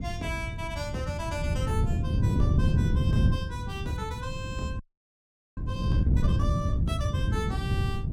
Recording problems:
wind noise; below 150 Hz, SNR -7 dB
audio freezing; at 5 s for 1 s

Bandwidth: 17 kHz